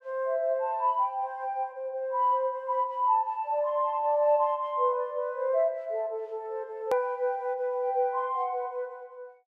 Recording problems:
edit click; at 7 s

